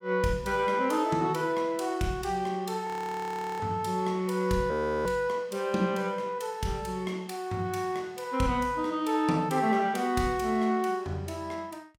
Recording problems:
frozen audio; at 3 s for 0.5 s and at 4.5 s

